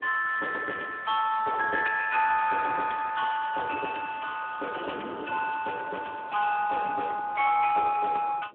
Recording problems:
telephone audio; 300 Hz to 2.5 kHz, Speex
wind on the microphone; below 590 Hz, SNR 21 dB

